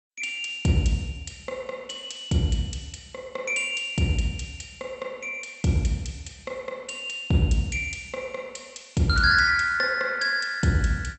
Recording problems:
lossy codec; MP2, log-spectral distance 4 dB, nothing above 8 kHz

